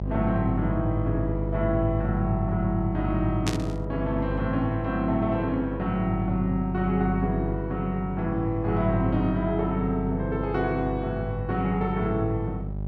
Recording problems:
hum; 50 Hz, harmonics up to 600 Hz, SNR 5 dB
static burst; at 3.5 s; peak +1 dB vs average level

